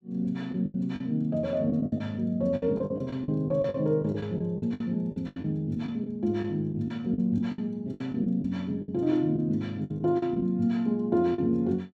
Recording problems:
packet loss; 13% of the sound replaced, filled with the last packet

